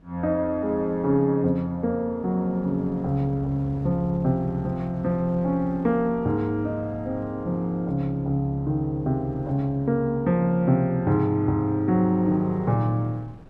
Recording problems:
wind on the microphone; below 330 Hz, SNR 22 dB

